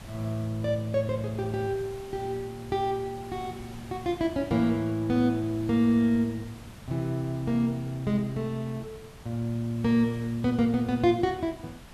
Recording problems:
background hiss; slope -4 dB per octave, SNR 19 dB

